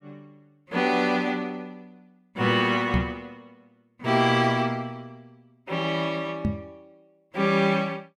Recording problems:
microphone thump; at 3 s and at 6.5 s; peak +4 dB vs average level

